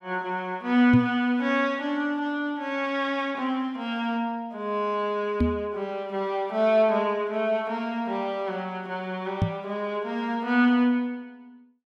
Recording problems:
knock on the microphone; at 1 s, at 5.5 s and at 9.5 s; peak +6 dB vs average level

